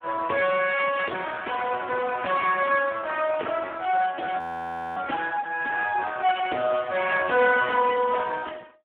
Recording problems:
telephone audio; 340 Hz to 3.3 kHz, Speex
frozen audio; at 4.5 s for 0.5 s

